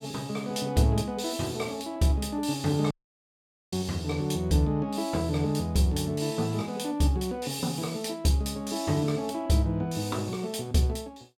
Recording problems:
dropout; at 3 s for 1 s

